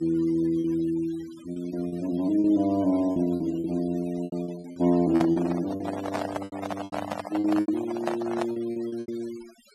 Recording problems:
denoising artefacts; signal-to-artefact ratio 19 dB
packet loss; 11% of the sound replaced, filled with repeated pitch periods
microphone handling noise; from 5 to 8.5 s; peak +2 dB vs average level

